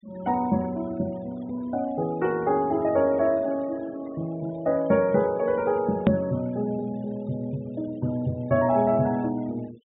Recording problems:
treble missing; nothing above 4 kHz
noise reduction artefacts; signal-to-artefact ratio 24 dB
edit click; at 6 s

